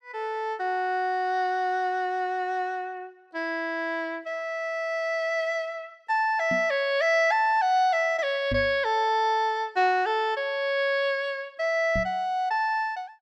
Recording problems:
microphone thump; at 6.5 s, at 8.5 s and at 12 s; peak -2 dB vs average level

